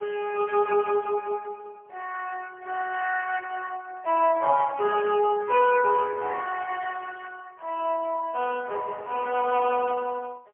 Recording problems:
phone line; 370 Hz to 3.2 kHz, AMR-NB, then MP3

